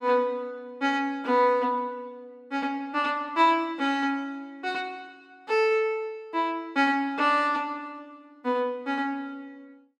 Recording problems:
none

